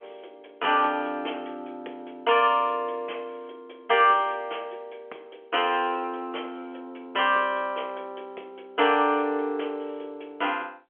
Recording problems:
phone line; 320 Hz to 3.3 kHz, G.711

